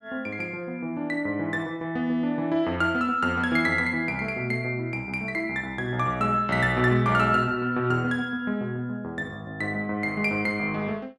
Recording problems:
none

